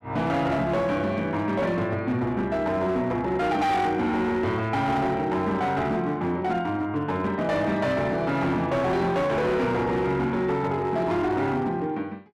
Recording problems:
distortion; hard clipping, signal-to-distortion ratio 11 dB

